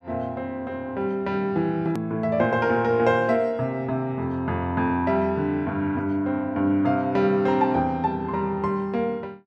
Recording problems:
click at an edit; at 2 s

